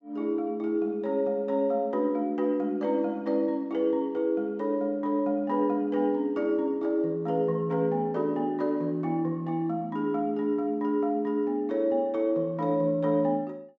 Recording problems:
low-pass filter; nothing above 7.8 kHz

